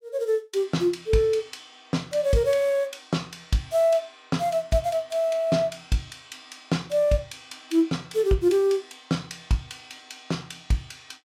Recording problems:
none

